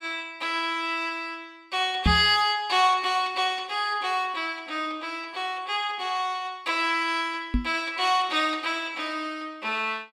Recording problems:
microphone thump; at 2 s and at 7.5 s; peak +6 dB vs average level

